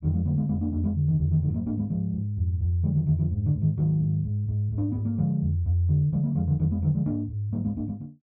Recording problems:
none

